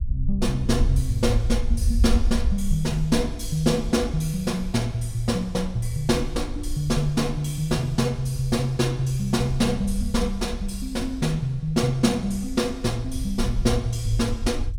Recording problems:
rumble; below 64 Hz, SNR 6 dB

